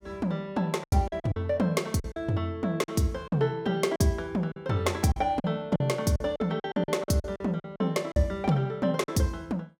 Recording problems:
packet loss; 11% of the sound replaced, filled with silence

